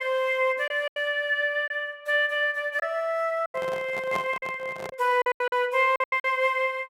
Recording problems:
lost packets; 9% of the sound replaced, filled with silence
handling noise; from 3.5 to 5 s; peak -4 dB vs average level

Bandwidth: 16 kHz